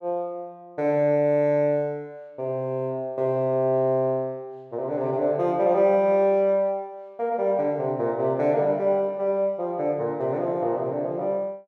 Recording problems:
none

